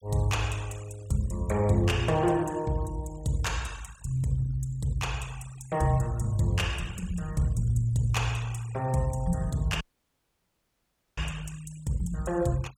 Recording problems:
denoising artefacts; signal-to-artefact ratio 21 dB
audio cutting out; at 10 s for 1.5 s

